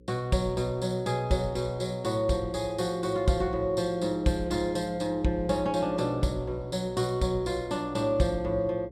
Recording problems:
hum; 60 Hz, harmonics up to 540 Hz, SNR 23 dB

